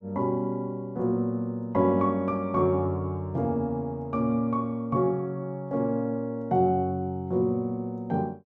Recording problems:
none

